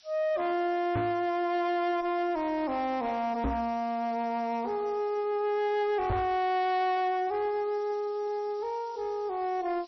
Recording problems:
lossy compression; MP3, log-spectral distance 4 dB, nothing above 5.5 kHz
distorted audio; soft clipping, signal-to-distortion ratio 9 dB
background hiss; SNR 27 dB
knock on the microphone; at 1 s, at 3.5 s and at 6 s; peak +3 dB vs average level

